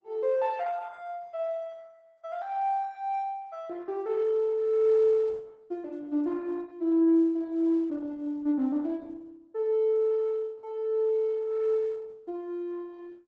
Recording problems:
lossy compression; Opus, log-spectral distance 2 dB

